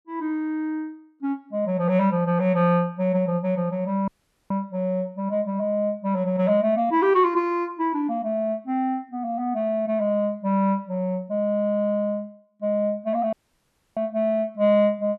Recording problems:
dropout; at 4 s and at 13 s for 0.5 s

